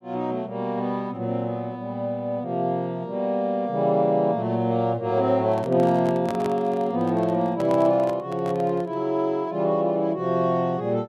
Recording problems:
handling noise; from 5.5 to 9 s; peak -5 dB vs average level

